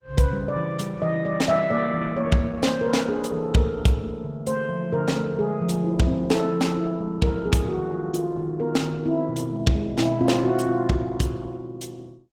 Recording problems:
lossy codec; Opus, log-spectral distance 3 dB, nothing above 19 kHz

